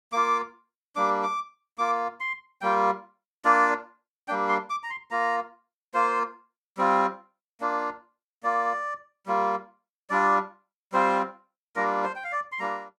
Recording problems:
none

